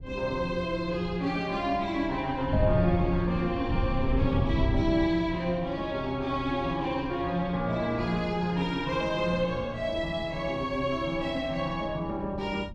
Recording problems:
wind noise; below 140 Hz, SNR 7 dB

